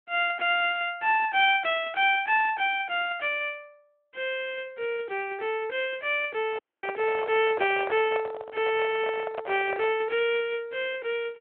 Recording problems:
telephone audio; 260 Hz to 3.4 kHz, Speex
microphone handling noise; from 6.5 to 10 s; peak -2 dB vs average level
audio cutting out; at 6.5 s

